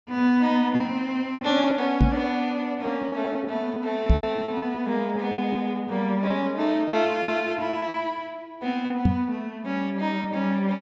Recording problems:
low-pass filter; nothing above 8 kHz
lost packets; 8% of the sound replaced, filled with repeated pitch periods
microphone thump; at 2 s, at 4 s and at 9 s; peak +9 dB vs average level

